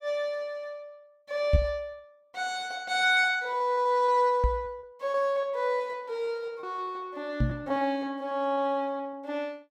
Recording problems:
packet loss; 8% of the sound replaced, filled with repeated pitch periods
microphone bump; at 1.5 s, at 4.5 s and at 7.5 s; peak +9 dB vs average level

